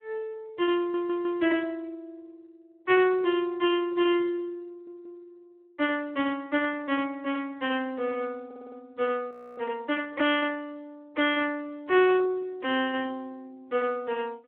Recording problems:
phone line; 260 Hz to 3.5 kHz, Speex
audio stuttering; at 1 s, at 4.5 s and at 8.5 s
frozen audio; at 9.5 s

